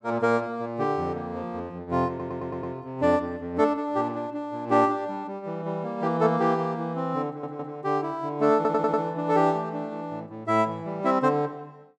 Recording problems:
stutter; at 2 s, at 7.5 s and at 8.5 s

